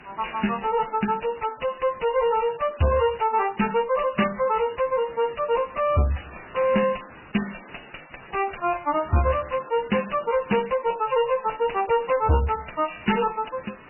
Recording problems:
lossy compression; MP3, log-spectral distance 14 dB, nothing above 2.9 kHz
distorted audio; soft clipping, signal-to-distortion ratio 7 dB
hiss; SNR 21 dB

